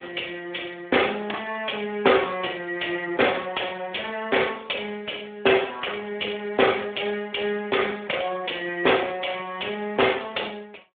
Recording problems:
phone line; 300 Hz to 3.5 kHz, Speex

